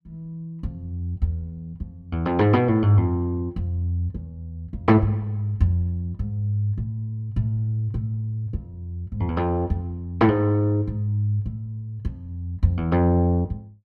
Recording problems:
none

